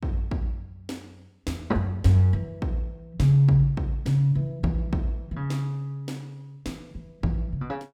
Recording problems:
none

